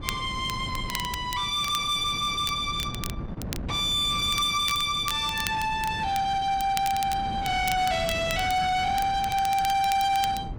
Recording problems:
distorted audio; soft clipping, signal-to-distortion ratio 11 dB
wind noise; below 300 Hz, SNR 12 dB
crackling; vinyl, SNR 14 dB

